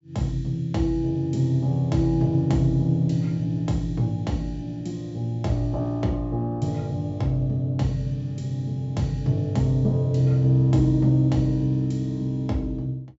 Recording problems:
treble cut off; nothing above 8 kHz

